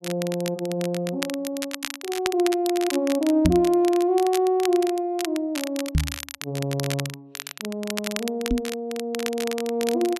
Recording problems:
crackle; vinyl, SNR 9 dB
microphone thump; at 3.5 s, at 6 s and at 8.5 s; peak +7 dB vs average level

